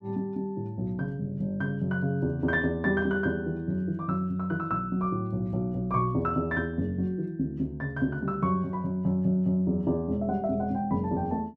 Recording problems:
none

